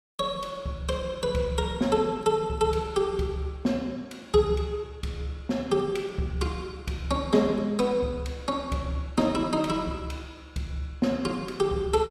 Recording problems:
none

